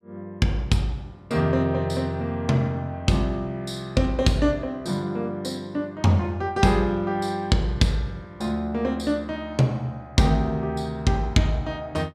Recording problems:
none

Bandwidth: 14.5 kHz